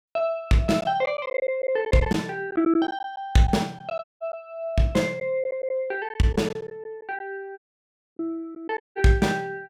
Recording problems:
lost packets; 7% of the sound replaced, filled with silence
dropout; at 4 s, at 7.5 s for 0.5 s and at 9 s

